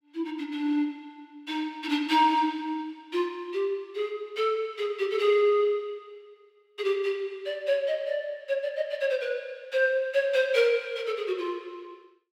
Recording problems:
none

